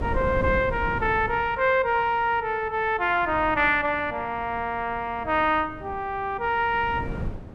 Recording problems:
wind on the microphone; below 260 Hz, SNR 13 dB

